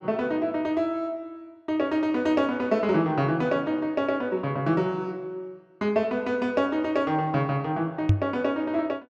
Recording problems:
microphone bump; at 8 s; peak +9 dB vs average level

